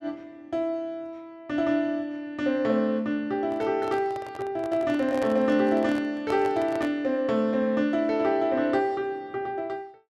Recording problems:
handling noise; from 3.5 to 7 s; peak -5 dB vs average level

